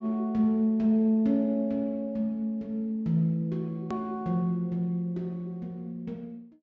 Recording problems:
treble missing; nothing above 8 kHz
hard cut with a click; at 4 s

